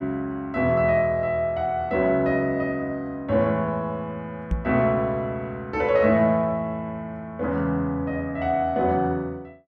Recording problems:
knock on the microphone; at 4.5 s; peak +2 dB vs average level

